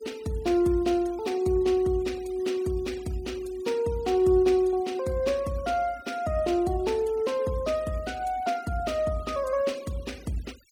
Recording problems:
noise reduction artefacts; signal-to-artefact ratio 22 dB

